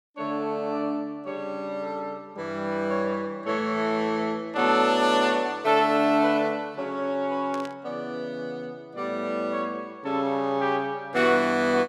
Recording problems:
burst of static; at 7.5 s; peak -11 dB vs average level

